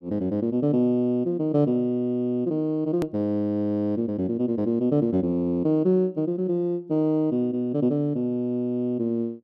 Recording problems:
click at an edit; at 3 s

